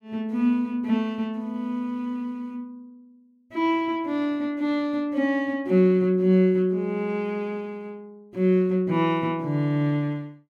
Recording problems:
none

